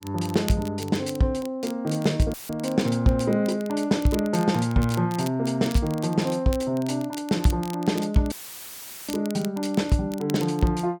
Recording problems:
crackle; vinyl, SNR 18 dB
dropout; at 2.5 s and at 8.5 s for 1 s; filled with static

